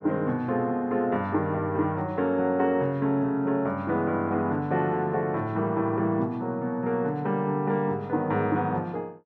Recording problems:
none

